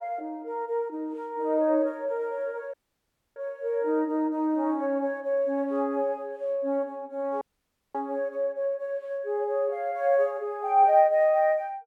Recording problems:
dropout; at 2.5 s for 0.5 s and at 7.5 s for 0.5 s

